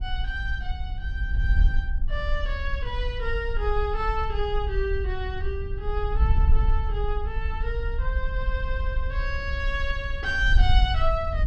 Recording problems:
wind noise; below 58 Hz, SNR -2 dB

